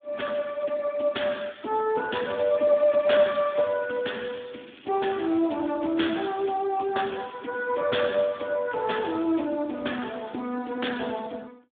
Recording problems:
telephone audio; 220 Hz to 3.6 kHz, Speex
crackling; from 2.5 to 6 s; loose cable, SNR 23 dB

